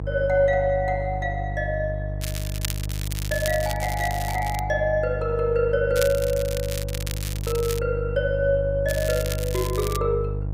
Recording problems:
hum; 50 Hz, harmonics up to 650 Hz, SNR 5 dB
crackling; from 2 to 4.5 s, from 6 to 8 s and from 9 to 10 s; loose cable, SNR 10 dB

